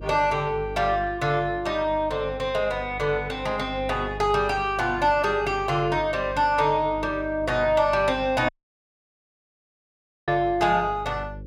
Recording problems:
hum; 50 Hz, harmonics up to 550 Hz, SNR 16 dB
dropout; at 8.5 s for 2 s

